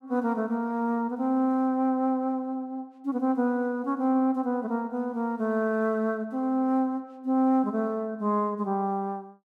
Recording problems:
none

